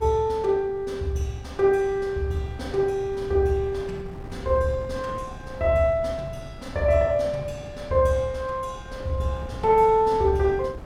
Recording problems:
wind on the microphone; below 230 Hz, SNR 17 dB

